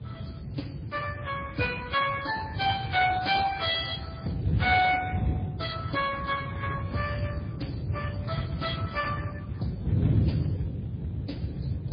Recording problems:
lossy compression; Speex, then MP3, log-spectral distance 4 dB, nothing above 4.8 kHz
wind on the microphone; below 180 Hz, SNR 3 dB

